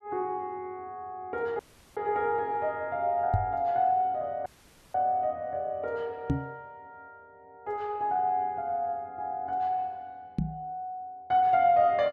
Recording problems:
audio cutting out; at 1.5 s and at 4.5 s
microphone thump; at 3.5 s, at 6.5 s and at 10 s; peak +6 dB vs average level

